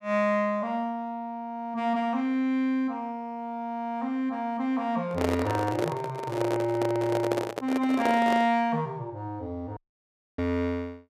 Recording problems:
microphone handling noise; from 5 to 8.5 s; peak +3 dB vs average level
audio cutting out; at 10 s for 0.5 s

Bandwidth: 15 kHz